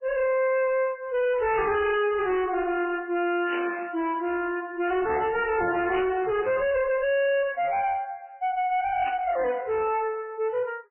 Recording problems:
lossy compression; MP3, then MP3, log-spectral distance 3 dB, nothing above 3 kHz
distortion; soft clipping, signal-to-distortion ratio 5 dB
static burst; at 3.5 s, at 6 s and at 9 s; peak -5 dB vs average level

